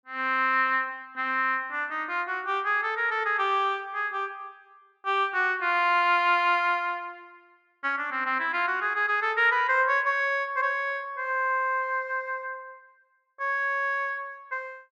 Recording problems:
none

